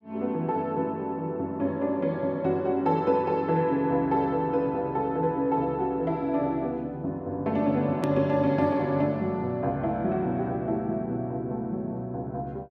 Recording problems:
click at an edit; at 8 s

